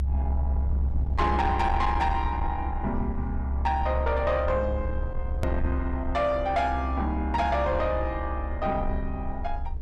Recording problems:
distorted audio; soft clipping, signal-to-distortion ratio 12 dB
low-frequency rumble; below 70 Hz, strongest tone 68 Hz, SNR 3 dB
edit click; at 5.5 s

